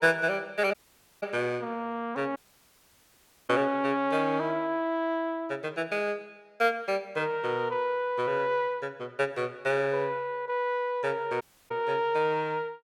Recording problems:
dropout; at 0.5 s, at 2.5 s for 1 s and at 11 s

